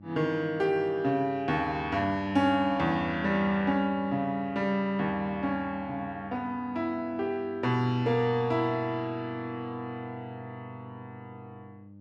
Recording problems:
hum; 50 Hz, harmonics up to 600 Hz, SNR 21 dB

